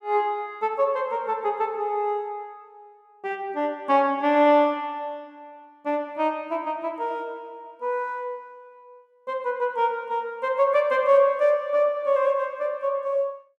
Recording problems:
none

